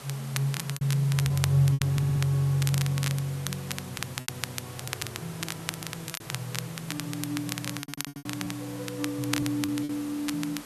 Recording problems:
hiss; slope -3 dB per octave, SNR 14 dB
crackle; vinyl, SNR 7 dB
packet loss; 6% of the sound replaced, filled with repeated pitch periods
stutter; at 2 s, at 5.5 s and at 8 s

